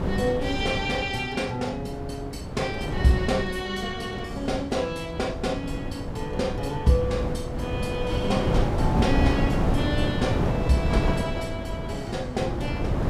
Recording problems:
wind noise; below 360 Hz, SNR 1 dB

